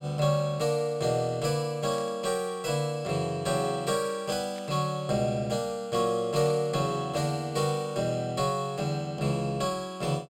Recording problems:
static burst; at 2 s, at 4.5 s and at 6.5 s; peak -14 dB vs average level

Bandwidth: 16 kHz